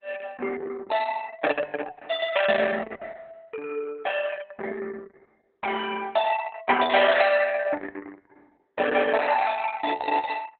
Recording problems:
codec artefacts; Opus, log-spectral distance 5 dB, nothing above 3.9 kHz

